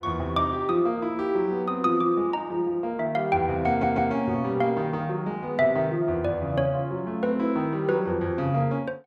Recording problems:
stutter; at 3.5 s

